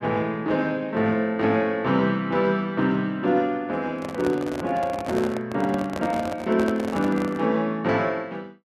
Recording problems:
handling noise; from 4 to 7.5 s; peak -3 dB vs average level

